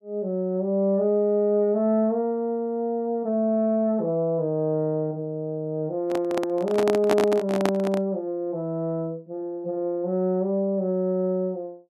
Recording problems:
handling noise; from 6 to 8 s; peak +4 dB vs average level

